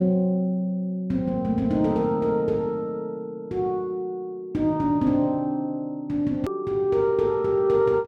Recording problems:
edit click; at 6.5 s

